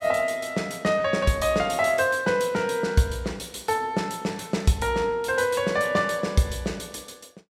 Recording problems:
none

